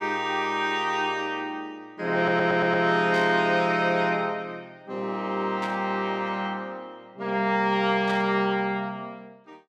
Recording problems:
stutter; at 2 s
static burst; at 3 s, at 5.5 s and at 8 s; peak -8 dB vs average level

